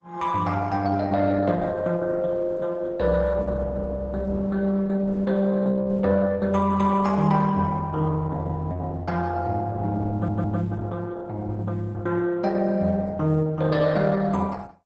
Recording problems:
lossy codec; Opus, log-spectral distance 3 dB, nothing above 7.6 kHz
audio stuttering; at 10 s

